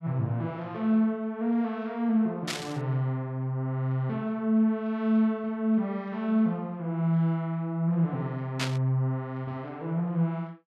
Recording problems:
static burst; at 2.5 s and at 8.5 s; peak +1 dB vs average level

